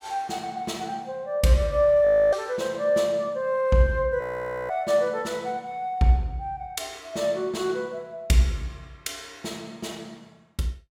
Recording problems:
frozen audio; at 2 s and at 4 s

